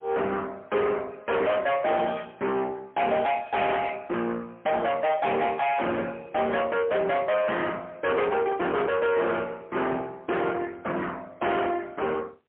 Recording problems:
phone line; 220 Hz to 3.4 kHz, AMR-NB, then MP3
distortion; soft clipping, signal-to-distortion ratio 7 dB

